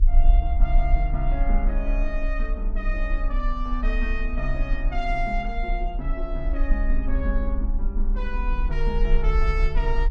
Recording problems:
low-frequency rumble; below 40 Hz, strongest tone 26 Hz, SNR -5 dB

